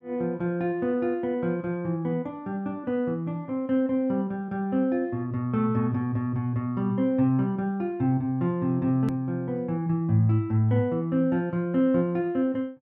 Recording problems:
edit click; at 9 s

